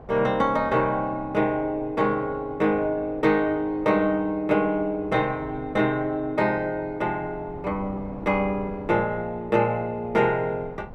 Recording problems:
wind on the microphone; below 570 Hz, SNR 20 dB

